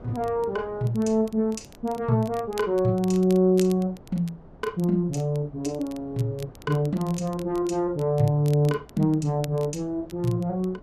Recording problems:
wind on the microphone; below 510 Hz, SNR 23 dB
crackling; vinyl, SNR 23 dB

